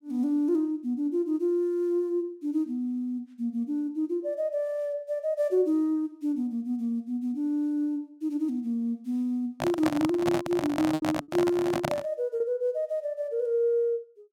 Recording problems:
packet loss; 1.2% of the sound replaced, filled with repeated pitch periods
microphone handling noise; from 9.5 to 12 s; peak +3 dB vs average level

